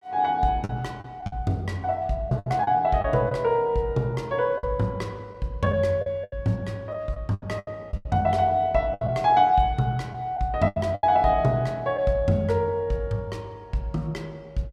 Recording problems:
lost packets; 7% of the sound replaced, filled with the last packet

